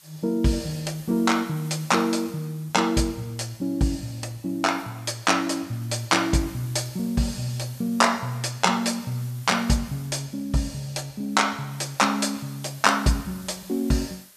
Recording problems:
hiss; slope +1 dB per octave, SNR 22 dB

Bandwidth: 14.5 kHz